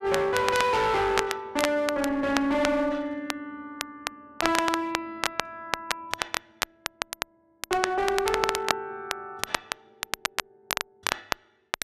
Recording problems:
distortion; hard clipping, uneven, signal-to-distortion ratio 6 dB
crackling; vinyl, SNR 5 dB

